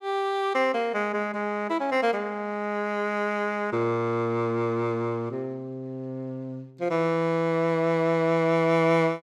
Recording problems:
none

